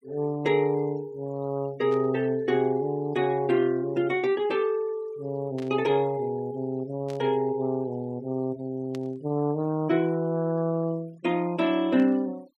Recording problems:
noise reduction artefacts; signal-to-artefact ratio 26 dB
burst of static; 5 times, first at 2 s; peak -14 dB vs average level

